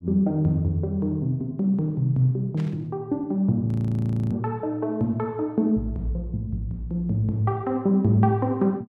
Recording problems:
static burst; at 2.5 s; peak -15 dB vs average level
frozen audio; at 3.5 s for 0.5 s

